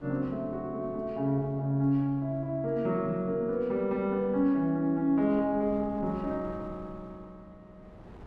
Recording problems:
wind on the microphone; below 410 Hz, SNR 22 dB

